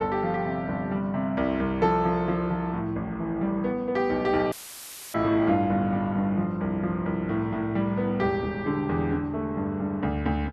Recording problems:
dropout; at 4.5 s for 0.5 s; filled with static

